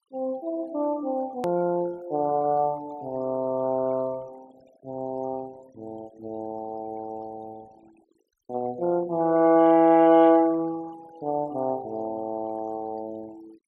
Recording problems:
denoising artefacts; signal-to-artefact ratio 26 dB
edit click; at 1.5 s

